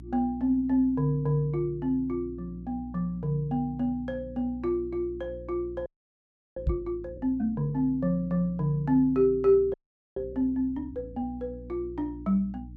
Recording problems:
hum; 60 Hz, harmonics up to 300 Hz, SNR 17 dB
audio freezing; at 6 s for 0.5 s and at 9.5 s
microphone thump; at 6.5 s; peak +4 dB vs average level

